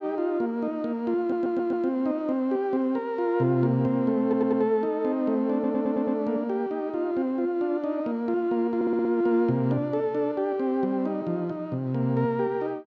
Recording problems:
stutter; 4 times, first at 1 s

